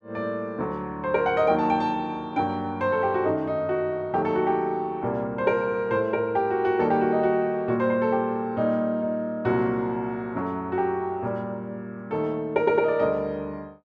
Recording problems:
none

